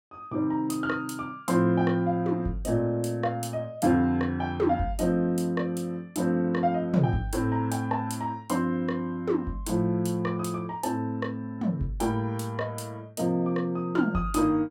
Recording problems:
none

